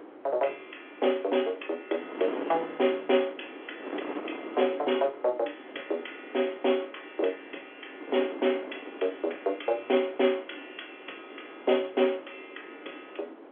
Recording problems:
phone line; 280 Hz to 3.4 kHz, G.711
wind noise; below 710 Hz, SNR 13 dB

